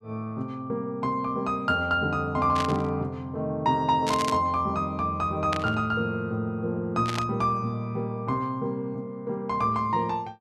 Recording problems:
static burst; 4 times, first at 2.5 s; peak 0 dB vs average level

